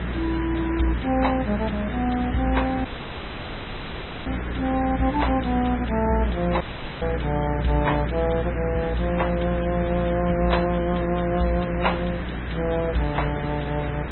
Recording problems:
treble cut off; nothing above 4 kHz
lossy codec; MP3, log-spectral distance 6 dB
hum; 60 Hz, harmonics up to 420 Hz, SNR 6 dB
background hiss; SNR 8 dB
audio cutting out; at 3 s for 1.5 s and at 6.5 s

